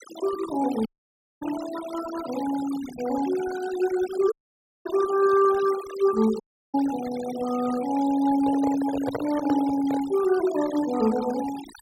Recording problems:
noise reduction artefacts; signal-to-artefact ratio 14 dB
audio cutting out; at 1 s for 0.5 s, at 4.5 s for 0.5 s and at 6.5 s
microphone handling noise; from 8.5 to 10 s; peak -1 dB vs average level

